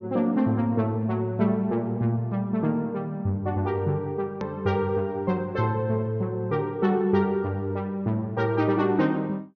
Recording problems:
treble cut off; nothing above 6.5 kHz
hard cut with a click; at 4.5 s

